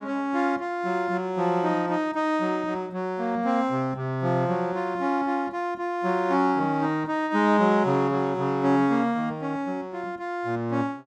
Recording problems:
none

